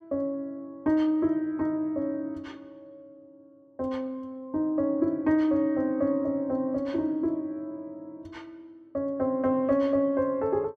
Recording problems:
none

